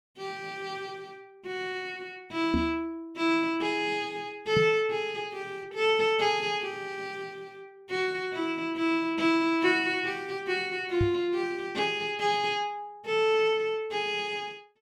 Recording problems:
knock on the microphone; at 2.5 s, at 4.5 s and at 11 s; peak +3 dB vs average level

